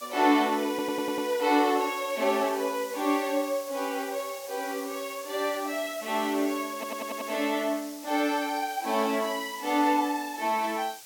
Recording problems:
hiss; slope +3 dB per octave, SNR 15 dB
audio stuttering; at 0.5 s and at 6.5 s

